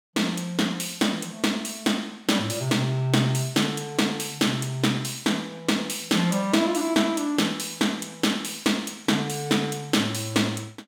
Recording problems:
none

